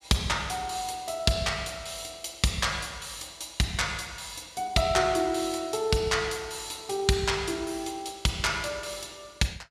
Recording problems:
none

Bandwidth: 14.5 kHz